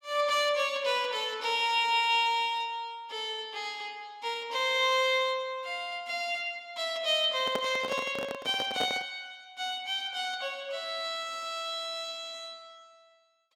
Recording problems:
handling noise; from 7.5 to 9 s; peak 0 dB vs average level

